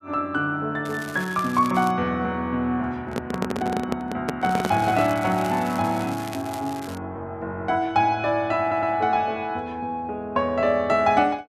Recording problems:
crackle; from 1 to 2 s and from 4.5 to 7 s; loose cable, SNR 17 dB
microphone handling noise; from 3 to 5 s; peak +2 dB vs average level
audio stuttering; at 8.5 s

